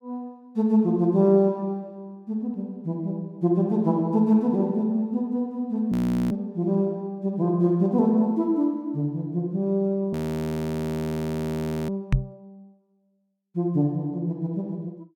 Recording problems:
frozen audio; at 6 s and at 10 s for 2 s
microphone bump; at 12 s; peak +6 dB vs average level

